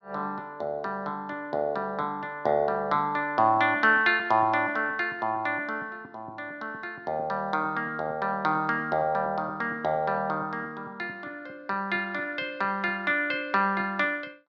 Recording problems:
none

